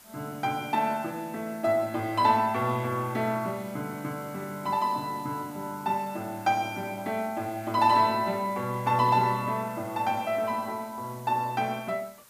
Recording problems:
background hiss; slope -1 dB per octave, SNR 22 dB

